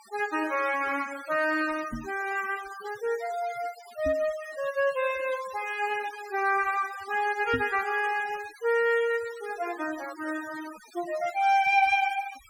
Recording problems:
denoising artefacts; signal-to-artefact ratio 17 dB
knock on the microphone; at 2 s, at 4 s and at 7.5 s; peak -2 dB vs average level

